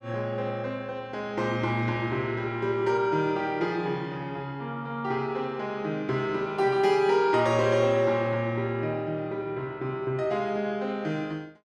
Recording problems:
none

